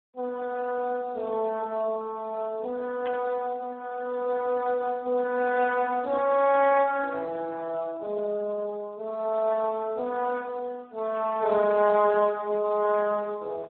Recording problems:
phone line; 220 Hz to 2.6 kHz, Speex
burst of static; at 3 s; peak -11 dB vs average level

